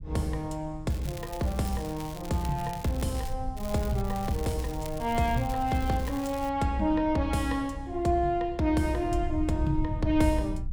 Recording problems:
rumble; below 84 Hz, SNR 10 dB
crackling; from 1 to 3.5 s and from 3.5 to 6.5 s; loose cable, SNR 17 dB

